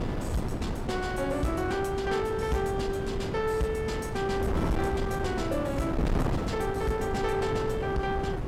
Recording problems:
distortion; soft clipping, signal-to-distortion ratio 10 dB
electrical hum; 60 Hz, harmonics up to 600 Hz, SNR 20 dB
wind on the microphone; below 420 Hz, SNR 3 dB

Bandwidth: 16.5 kHz